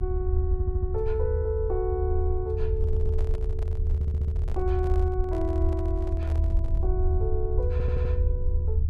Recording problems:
mains hum; 60 Hz, harmonics up to 1.1 kHz, SNR 22 dB
low-frequency rumble; below 78 Hz, SNR -4 dB
audio stuttering; 4 times, first at 0.5 s
handling noise; from 2.5 to 7 s; peak -8 dB vs average level

